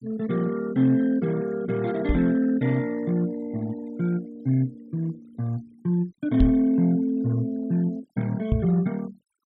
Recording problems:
denoising artefacts; signal-to-artefact ratio 24 dB
microphone bump; at 2 s, at 6.5 s and at 8.5 s; peak +5 dB vs average level

